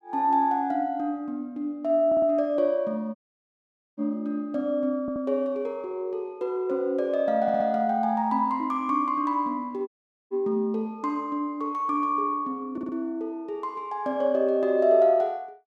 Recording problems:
audio stuttering; 4 times, first at 2 s
audio cutting out; at 3 s for 1 s and at 10 s

